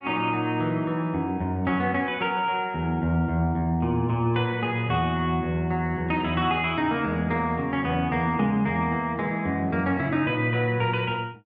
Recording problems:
none

